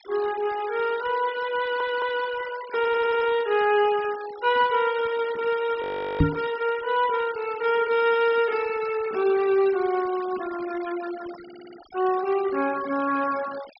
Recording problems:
treble cut off; nothing above 5.5 kHz
noise reduction artefacts; signal-to-artefact ratio 17 dB
stutter; at 1.5 s, at 3 s and at 11 s
frozen audio; at 6 s
knock on the microphone; at 6 s; peak +8 dB vs average level

